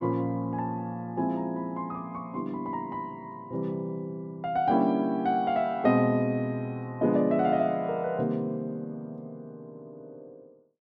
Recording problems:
none

